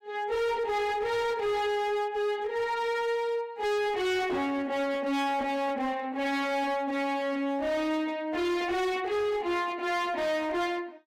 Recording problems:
distortion; hard clipping, signal-to-distortion ratio 8 dB

